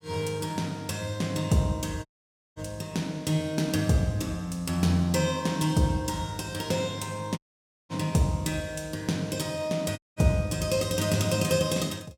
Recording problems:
audio cutting out; at 2 s for 0.5 s, at 7.5 s for 0.5 s and at 10 s

